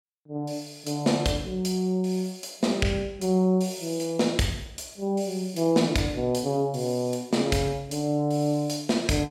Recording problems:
none

